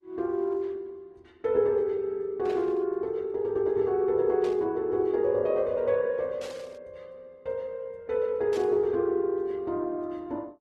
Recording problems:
lossy compression; Opus, log-spectral distance 2 dB
static burst; 4 times, first at 2.5 s; peak -12 dB vs average level

